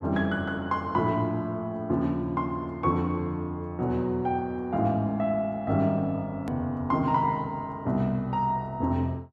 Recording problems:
edit click; at 6.5 s

